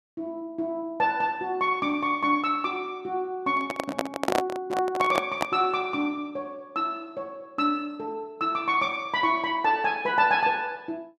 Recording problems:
handling noise; from 3.5 to 5.5 s; peak +5 dB vs average level

